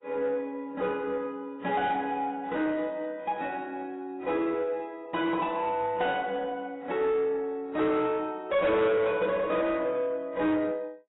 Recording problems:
codec artefacts; AAC, log-spectral distance 2 dB, nothing above 3.4 kHz
distortion; soft clipping, signal-to-distortion ratio 10 dB

